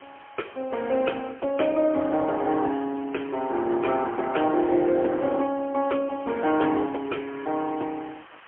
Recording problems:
telephone audio; 280 Hz to 3.2 kHz, AMR-NB, then MP3
hiss; SNR 24 dB

